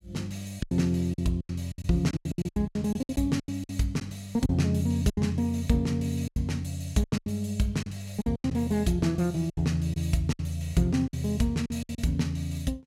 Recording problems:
packet loss; 13% of the sound replaced, filled with silence

